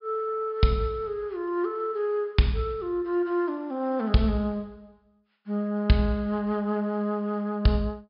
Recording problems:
treble cut off; nothing above 5.5 kHz

